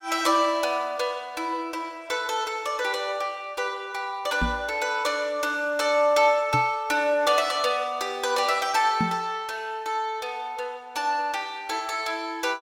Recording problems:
microphone bump; at 4.5 s, at 6.5 s and at 9 s; peak +2 dB vs average level

